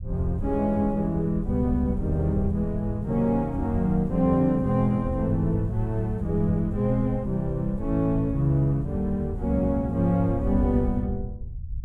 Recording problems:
low-frequency rumble; below 92 Hz, SNR 10 dB

